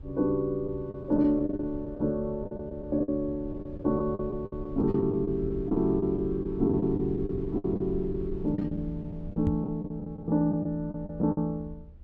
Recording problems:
rumble; below 94 Hz, SNR 14 dB
lost packets; 12% of the sound replaced, filled with the last packet
microphone bump; at 9.5 s; peak +3 dB vs average level

